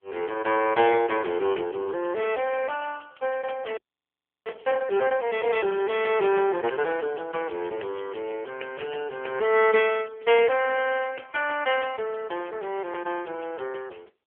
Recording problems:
phone line; 320 Hz to 3.3 kHz, AMR-NB
frozen audio; at 4 s for 0.5 s

